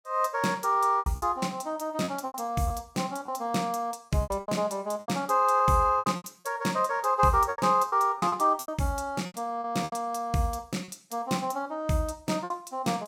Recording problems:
packet loss; 11% of the sound replaced, filled with repeated pitch periods

